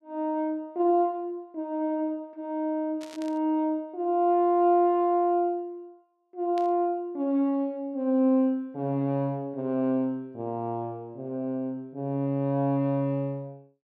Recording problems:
burst of static; at 3 s and at 6.5 s; peak -14 dB vs average level

